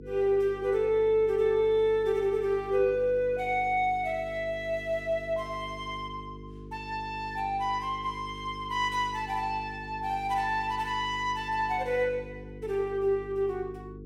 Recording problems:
electrical hum; 50 Hz, harmonics up to 450 Hz, SNR 16 dB

